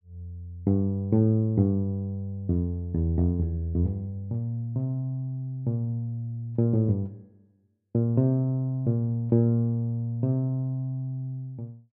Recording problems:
none

